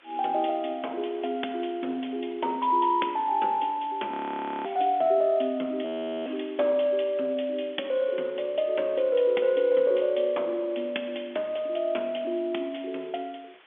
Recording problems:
telephone audio; 220 Hz to 3.6 kHz, G.711
background hiss; SNR 27 dB
audio freezing; at 4 s for 0.5 s and at 6 s

